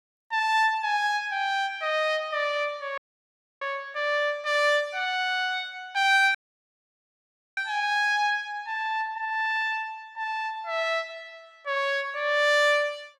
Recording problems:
audio cutting out; at 3 s for 0.5 s and at 6.5 s for 1 s

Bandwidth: 16.5 kHz